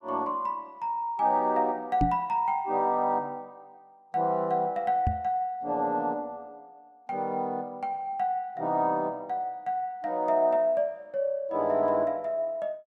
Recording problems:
microphone thump; at 2 s and at 5 s; peak +4 dB vs average level

